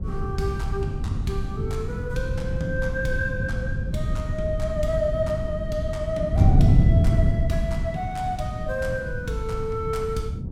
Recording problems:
wind on the microphone; below 140 Hz, SNR -3 dB

